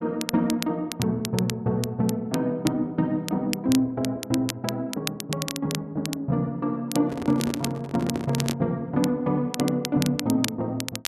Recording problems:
crackle; vinyl, SNR 9 dB
handling noise; from 7 to 8.5 s; peak -2 dB vs average level

